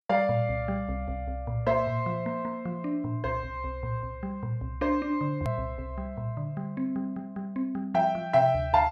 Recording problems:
click at an edit; at 5.5 s

